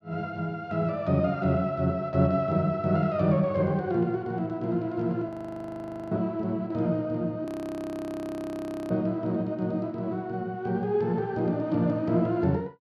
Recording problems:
frozen audio; at 5.5 s for 1 s and at 7.5 s for 1.5 s

